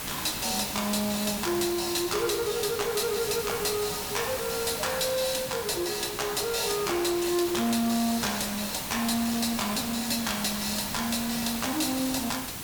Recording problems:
distortion; hard clipping, uneven, signal-to-distortion ratio 10 dB
background hiss; slope -1 dB per octave, SNR 6 dB

